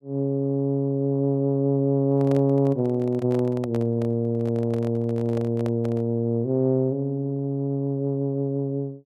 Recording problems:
microphone handling noise; from 2 to 6 s; peak -8 dB vs average level

